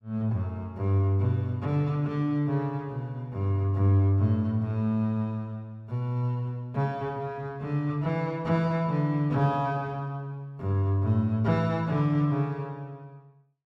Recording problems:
none

